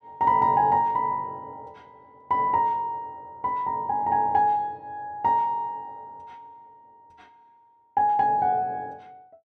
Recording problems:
none

